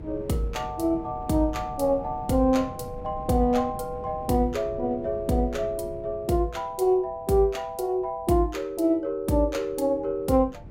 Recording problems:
wind on the microphone; below 230 Hz, SNR 16 dB

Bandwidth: 16 kHz